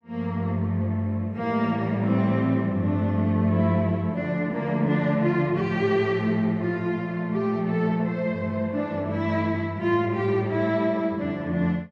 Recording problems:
none

